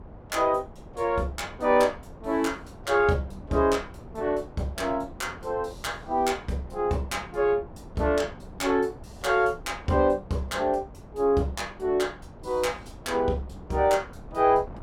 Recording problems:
wind noise; below 420 Hz, SNR 19 dB

